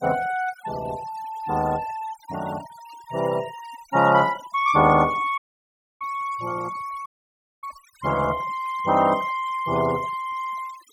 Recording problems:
denoising artefacts; signal-to-artefact ratio 18 dB
audio cutting out; at 5.5 s for 0.5 s and at 7 s for 0.5 s

